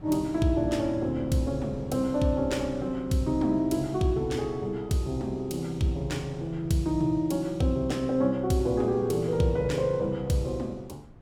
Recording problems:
wind noise; below 250 Hz, SNR 19 dB

